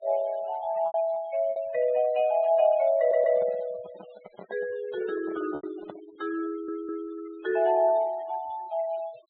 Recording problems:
low-pass filter; nothing above 4 kHz
noise reduction artefacts; signal-to-artefact ratio 25 dB
lost packets; 4% of the sound replaced, filled with repeated pitch periods
audio stuttering; at 3 s and at 6.5 s
handling noise; from 3 to 6 s; peak -10 dB vs average level

